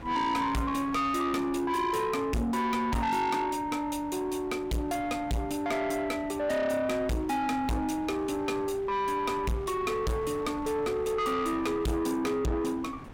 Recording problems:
distortion; soft clipping, signal-to-distortion ratio 8 dB
wind noise; below 930 Hz, SNR 17 dB

